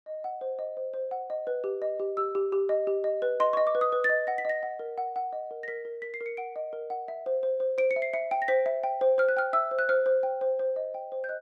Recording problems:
none

